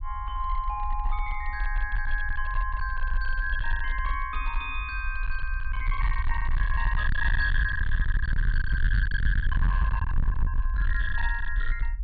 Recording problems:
treble missing; nothing above 4.6 kHz
distorted audio; hard clipping, uneven, signal-to-distortion ratio 6 dB
low-frequency rumble; below 56 Hz, SNR -1 dB

